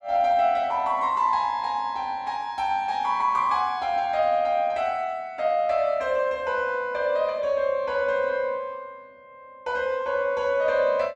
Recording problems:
none

